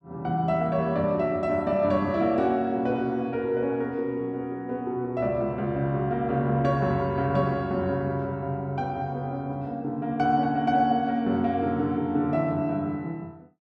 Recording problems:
none

